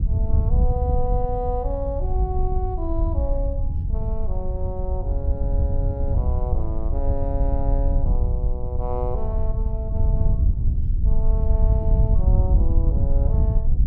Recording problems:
wind on the microphone; below 78 Hz, SNR -8 dB

